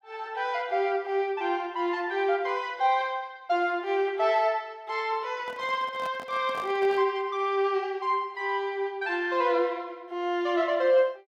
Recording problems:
handling noise; from 5.5 to 7 s; peak -9 dB vs average level

